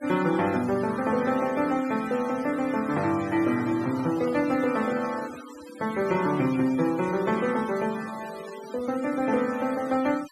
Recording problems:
denoising artefacts; signal-to-artefact ratio 17 dB
handling noise; from 3.5 to 5.5 s; peak -12 dB vs average level

